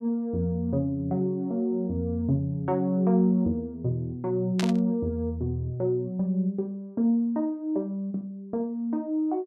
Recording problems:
burst of static; at 4.5 s; peak -1 dB vs average level

